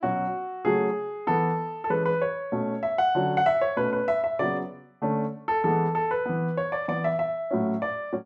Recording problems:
none

